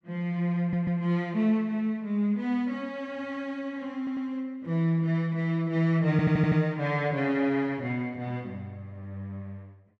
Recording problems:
stutter; at 0.5 s, at 4 s and at 6 s

